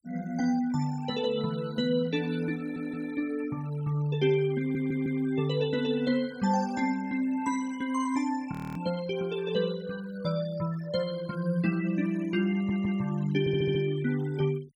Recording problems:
noise reduction artefacts; signal-to-artefact ratio 22 dB
stutter; 4 times, first at 2.5 s
audio freezing; at 8.5 s

